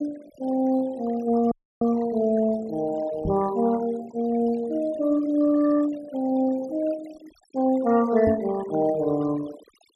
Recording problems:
noise reduction artefacts; signal-to-artefact ratio 19 dB
dropout; at 1.5 s
microphone thump; at 3.5 s and at 8.5 s; peak -1 dB vs average level

